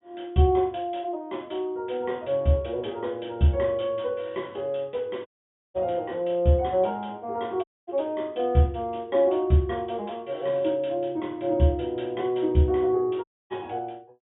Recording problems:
low-pass filter; nothing above 3.6 kHz
dropout; at 5.5 s, at 7.5 s and at 13 s

